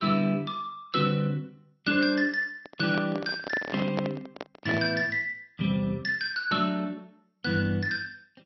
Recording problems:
lossy compression; Vorbis, then MP2, log-spectral distance 3 dB, nothing above 4.8 kHz
microphone handling noise; from 2.5 to 5 s; peak +2 dB vs average level

